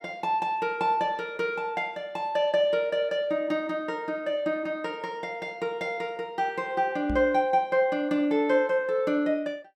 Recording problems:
microphone bump; at 7 s; peak -3 dB vs average level

